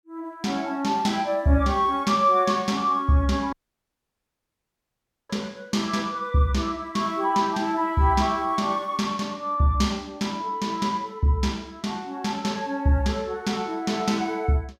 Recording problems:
dropout; at 3.5 s for 2 s

